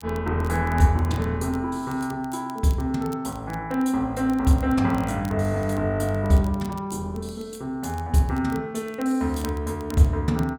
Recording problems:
crackling; vinyl, SNR 25 dB

